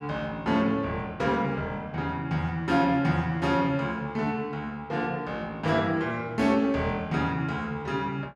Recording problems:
none

